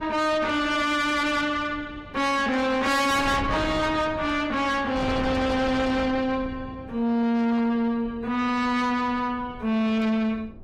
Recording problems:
lossy compression; AAC, log-spectral distance 2 dB, nothing above 15.5 kHz
distorted audio; soft clipping, signal-to-distortion ratio 7 dB
wind noise; below 580 Hz, SNR 12 dB

